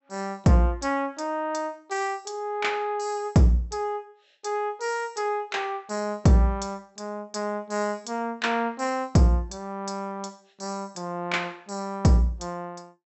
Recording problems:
treble missing; nothing above 7.8 kHz

